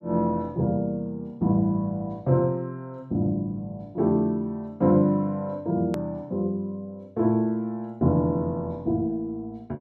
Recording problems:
edit click; at 6 s

